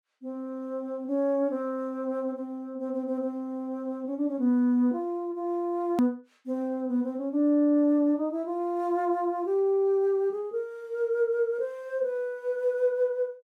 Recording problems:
hard cut with a click; at 6 s

